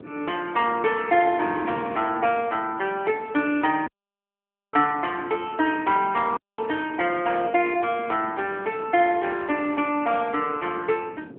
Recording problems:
telephone audio; 240 Hz to 3.3 kHz, AMR-NB
wind on the microphone; below 440 Hz, SNR 17 dB
audio cutting out; at 4 s for 1 s and at 6.5 s

